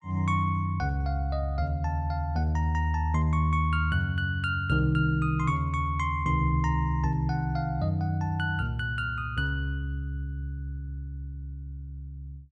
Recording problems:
none

